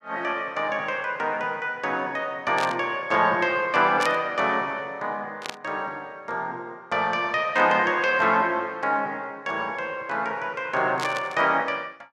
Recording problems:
static burst; 4 times, first at 2.5 s; peak -3 dB vs average level

